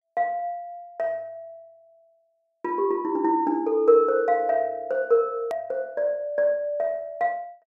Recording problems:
hard cut with a click; at 5.5 s

